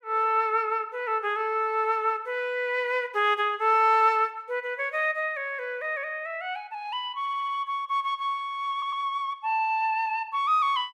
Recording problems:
audio stuttering; at 7 s and at 8.5 s

